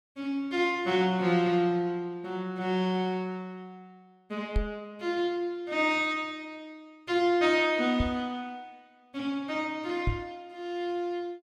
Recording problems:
knock on the microphone; at 4.5 s, at 8 s and at 10 s; peak +4 dB vs average level

